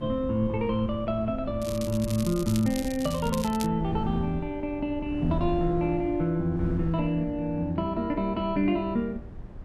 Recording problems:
wind noise; below 140 Hz, SNR 12 dB
crackle; from 1.5 to 3.5 s; loose cable, SNR 13 dB

